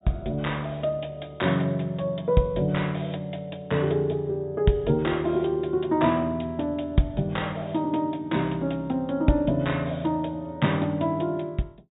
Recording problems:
treble cut off; nothing above 4 kHz

